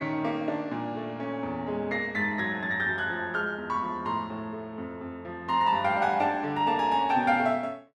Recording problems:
none

